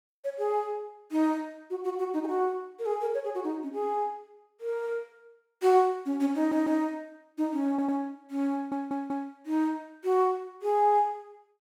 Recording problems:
audio stuttering; at 6.5 s, at 7.5 s and at 8.5 s

